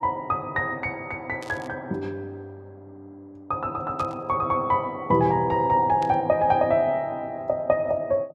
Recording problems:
burst of static; at 1.5 s, at 4 s and at 6 s; peak -13 dB vs average level

